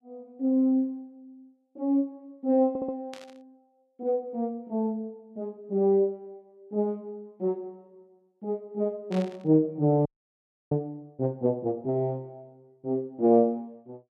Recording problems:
stutter; at 2.5 s
burst of static; at 3 s and at 9 s; peak -12 dB vs average level
audio freezing; at 10 s for 0.5 s

